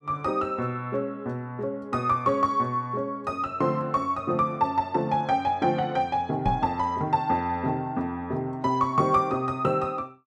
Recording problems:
microphone bump; at 6.5 s; peak +2 dB vs average level

